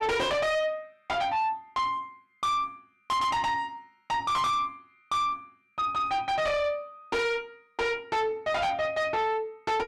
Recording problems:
distortion; soft clipping, signal-to-distortion ratio 6 dB

